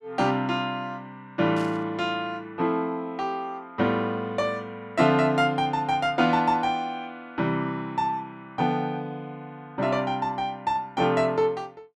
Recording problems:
burst of static; at 1.5 s; peak -13 dB vs average level

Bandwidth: 12.5 kHz